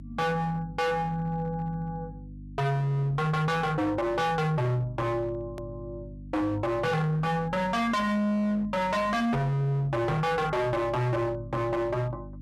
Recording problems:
distortion; hard clipping, signal-to-distortion ratio 6 dB
hum; 50 Hz, harmonics up to 300 Hz, SNR 16 dB
hard cut with a click; at 5.5 s

